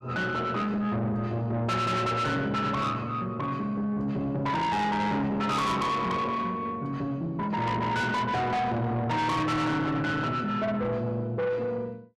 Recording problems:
distorted audio; soft clipping, signal-to-distortion ratio 7 dB

